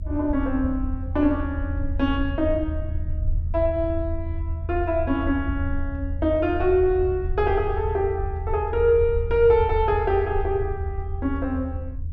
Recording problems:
rumble; below 82 Hz, SNR 6 dB

